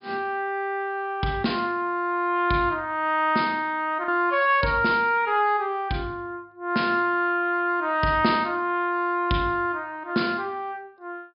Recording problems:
treble missing; nothing above 5.5 kHz
lost packets; 0.4% of the sound replaced, filled with the last packet

